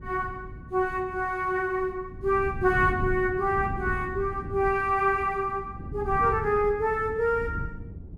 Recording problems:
wind noise; below 170 Hz, SNR 11 dB

